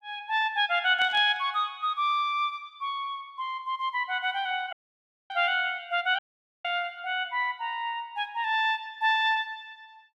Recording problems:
static burst; at 1 s and at 5.5 s; peak -12 dB vs average level
dropout; at 4.5 s for 0.5 s and at 6 s

